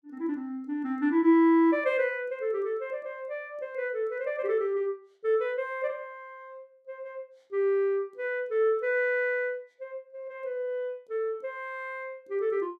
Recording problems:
none

